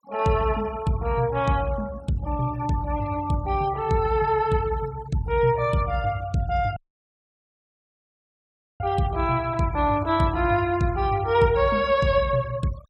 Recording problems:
denoising artefacts; signal-to-artefact ratio 22 dB
dropout; at 7 s for 2 s

